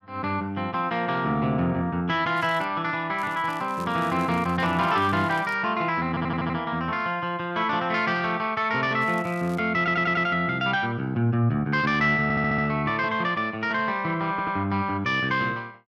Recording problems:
crackling; at 2.5 s, from 3 to 5.5 s and at 9 s; loose cable, SNR 25 dB
stutter; 4 times, first at 6 s

